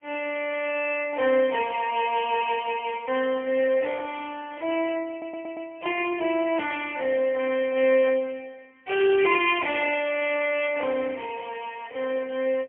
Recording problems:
phone line; 280 Hz to 3.2 kHz, AMR-NB, then MP3
stutter; at 5 s
static burst; at 10 s; peak -15 dB vs average level

